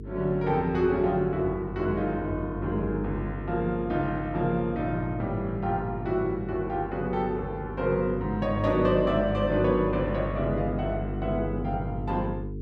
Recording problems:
hum; 50 Hz, harmonics up to 450 Hz, SNR 8 dB

